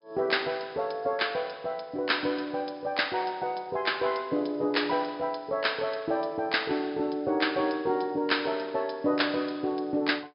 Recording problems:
low-pass filter; nothing above 5.5 kHz

